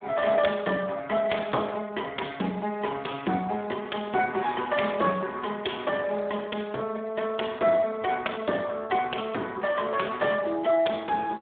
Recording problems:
phone line; 190 Hz to 3.4 kHz, Speex

